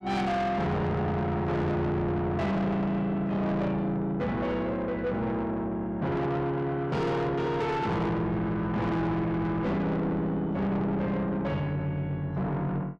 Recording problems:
distortion; soft clipping, signal-to-distortion ratio 8 dB

